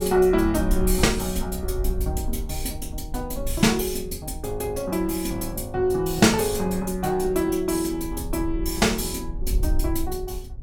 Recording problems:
wind on the microphone; below 60 Hz, SNR 9 dB

